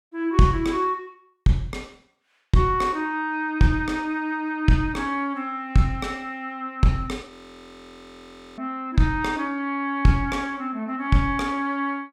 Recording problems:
frozen audio; at 7.5 s for 1.5 s

